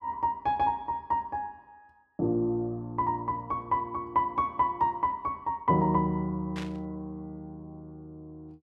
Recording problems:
burst of static; at 6.5 s; peak -7 dB vs average level

